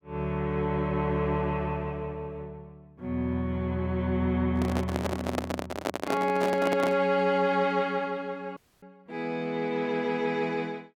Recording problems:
microphone handling noise; from 4.5 to 7 s; peak +3 dB vs average level
audio cutting out; at 8.5 s

